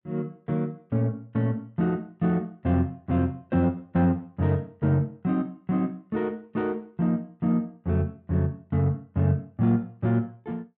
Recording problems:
none

